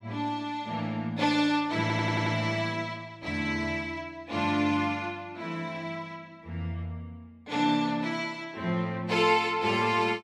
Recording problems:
audio stuttering; at 2 s

